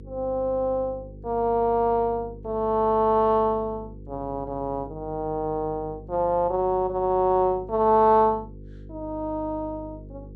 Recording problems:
hum; 50 Hz, harmonics up to 500 Hz, SNR 18 dB

